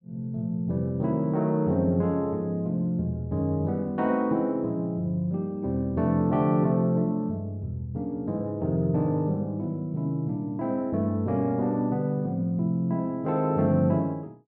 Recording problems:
none

